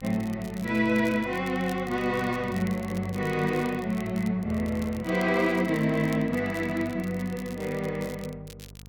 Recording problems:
electrical hum; 50 Hz, harmonics up to 950 Hz, SNR 19 dB
crackle; vinyl, SNR 21 dB

